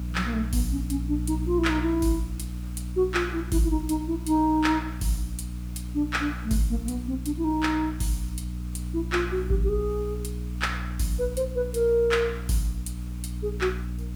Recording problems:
hum; 60 Hz, harmonics up to 300 Hz, SNR 7 dB
background hiss; slope -3 dB per octave, SNR 23 dB

